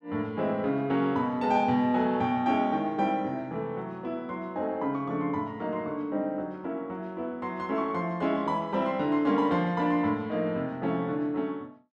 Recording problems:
none

